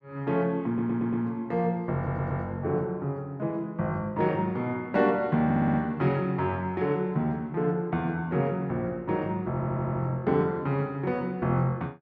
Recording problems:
audio stuttering; 4 times, first at 0.5 s

